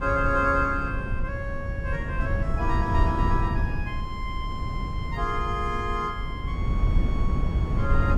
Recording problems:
wind noise; below 110 Hz, SNR -1 dB

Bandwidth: 15 kHz